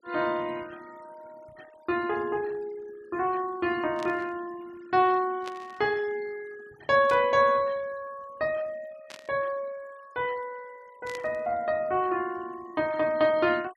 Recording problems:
denoising artefacts; signal-to-artefact ratio 24 dB
burst of static; 5 times, first at 4 s; peak -10 dB vs average level

